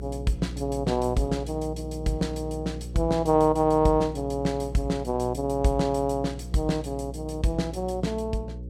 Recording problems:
hum; 60 Hz, harmonics up to 540 Hz, SNR 11 dB

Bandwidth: 16 kHz